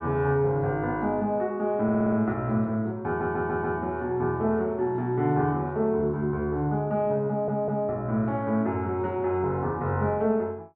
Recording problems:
stutter; at 2 s, at 3 s and at 7.5 s

